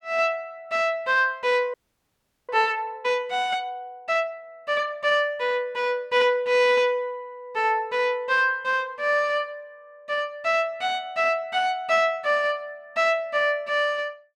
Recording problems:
frozen audio; at 1.5 s for 1 s

